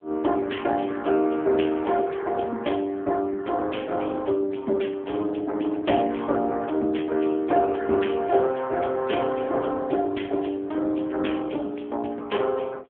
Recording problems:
telephone audio; 240 Hz to 3.3 kHz, AMR-NB

